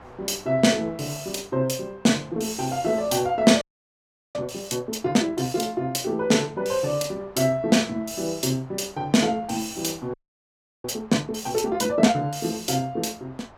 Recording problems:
wind noise; below 1.2 kHz, SNR 25 dB
audio freezing; at 3.5 s for 0.5 s and at 10 s for 0.5 s

